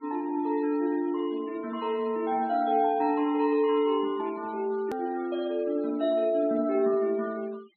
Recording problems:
treble cut off; nothing above 4.3 kHz
noise reduction artefacts; signal-to-artefact ratio 24 dB
edit click; at 5 s

